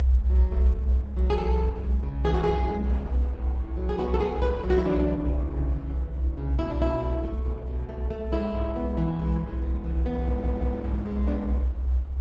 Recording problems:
lossy codec; Opus, log-spectral distance 2 dB, nothing above 7.8 kHz
low-frequency rumble; below 66 Hz, strongest tone 64 Hz, SNR -5 dB
wind noise; below 780 Hz, SNR 17 dB
stutter; at 10 s

